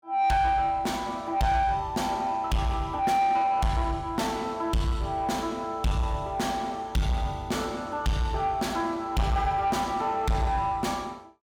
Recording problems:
distorted audio; soft clipping, signal-to-distortion ratio 8 dB

